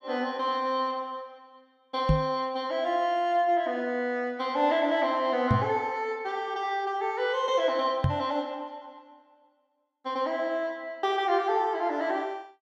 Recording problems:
microphone thump; at 2 s, at 5.5 s and at 8 s; peak +7 dB vs average level

